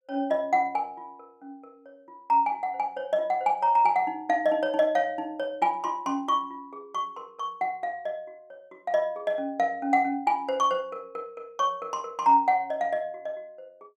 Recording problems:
none

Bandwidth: 15.5 kHz